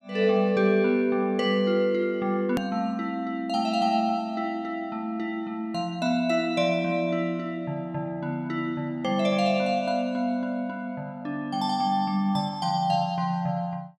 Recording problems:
click at an edit; at 2.5 s

